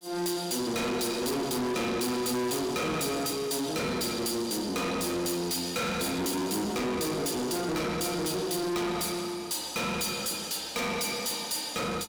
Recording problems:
distorted audio; soft clipping, signal-to-distortion ratio 6 dB

